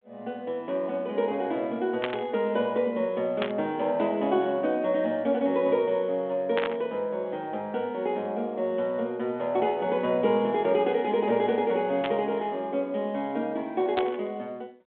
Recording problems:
phone line; 220 Hz to 3.5 kHz, G.726
static burst; 5 times, first at 2 s; peak 0 dB vs average level

